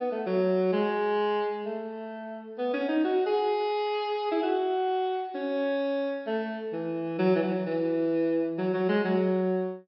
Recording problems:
treble cut off; nothing above 5.5 kHz

